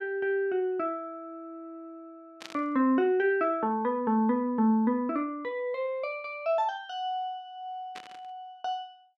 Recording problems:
burst of static; at 2.5 s and at 8 s; peak -8 dB vs average level

